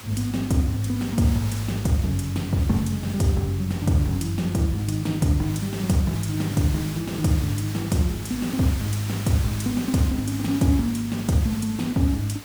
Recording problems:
hiss; slope -1 dB per octave, SNR 14 dB

